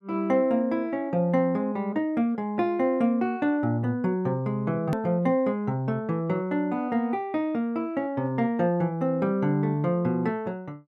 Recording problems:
edit click; at 5 s

